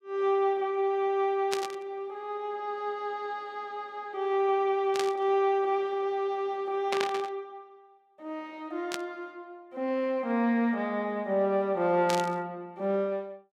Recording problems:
burst of static; 5 times, first at 1.5 s; peak +1 dB vs average level

